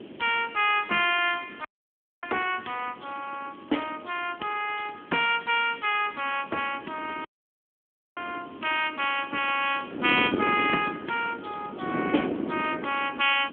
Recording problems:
telephone audio; 240 Hz to 3.3 kHz, AMR-NB
background hiss; SNR 27 dB
wind noise; below 470 Hz, SNR 9 dB
dropout; at 1.5 s for 0.5 s and at 7.5 s for 1 s

